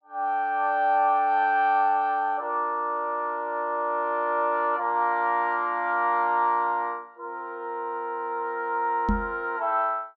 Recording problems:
microphone thump; at 9 s; peak +3 dB vs average level

